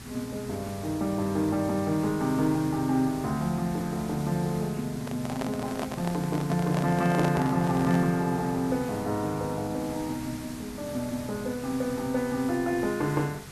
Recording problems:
hiss; slope -2 dB per octave, SNR 13 dB
microphone handling noise; from 5 to 8 s; peak 0 dB vs average level

